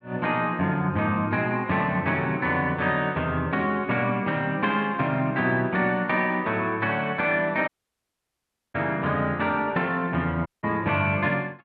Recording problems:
audio cutting out; at 7.5 s for 1 s and at 10 s

